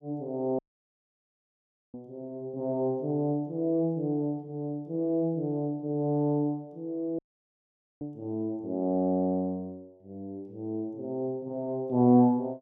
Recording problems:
dropout; at 0.5 s for 1.5 s and at 7 s for 1 s

